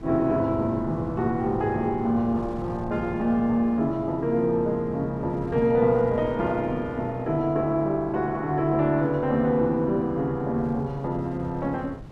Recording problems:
wind on the microphone; below 230 Hz, SNR 18 dB

